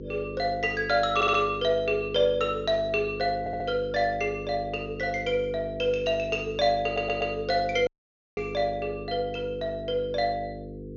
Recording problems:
low-pass filter; nothing above 6.7 kHz
electrical hum; 50 Hz, harmonics up to 500 Hz, SNR 12 dB
stutter; at 1 s, at 3.5 s and at 7 s
dropout; at 8 s

